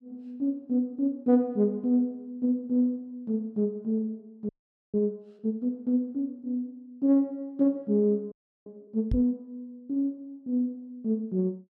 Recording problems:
frozen audio; at 4.5 s and at 8.5 s
microphone bump; at 9 s; peak +2 dB vs average level

